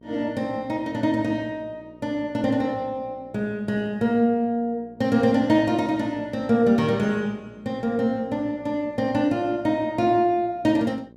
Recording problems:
electrical hum; 60 Hz, harmonics up to 660 Hz, SNR 25 dB

